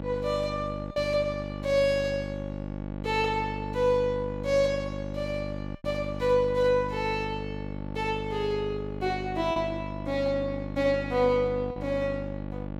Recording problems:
hum; 50 Hz, harmonics up to 1.2 kHz, SNR 7 dB
packet loss; 1% of the sound replaced, filled with repeated pitch periods

